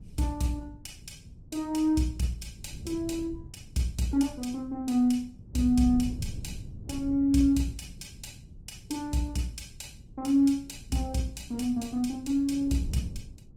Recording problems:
lossy codec; Opus, log-spectral distance 3 dB
wind noise; below 150 Hz, SNR 16 dB

